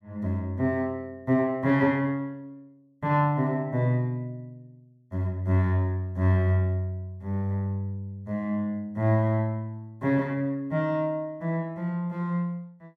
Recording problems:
none

